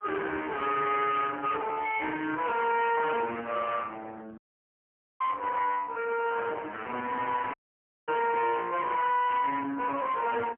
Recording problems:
telephone audio; 260 Hz to 3.3 kHz, AMR-NB, then MP3
distortion; hard clipping, uneven, signal-to-distortion ratio 5 dB
dropout; at 4.5 s for 1 s and at 7.5 s for 0.5 s

